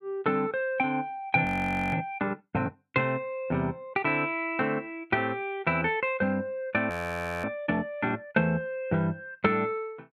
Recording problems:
audio freezing; at 1.5 s and at 7 s for 0.5 s

